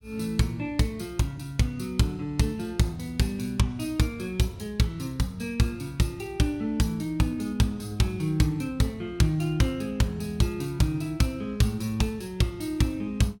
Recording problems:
none

